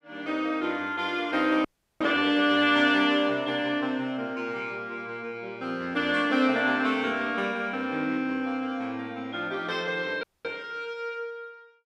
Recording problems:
frozen audio; at 1.5 s and at 10 s

